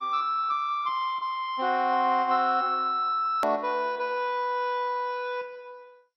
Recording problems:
lossy compression; MP2, log-spectral distance 2 dB, nothing above 14.1 kHz
edit click; at 3.5 s

